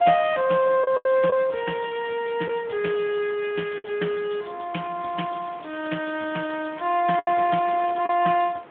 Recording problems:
telephone audio; 220 Hz to 3.3 kHz, Speex
wind noise; below 1.6 kHz, SNR 21 dB
packet loss; 4% of the sound replaced, filled with the last packet
crackle; at 1 s, at 3.5 s and from 5 to 8 s; loose cable, SNR 27 dB

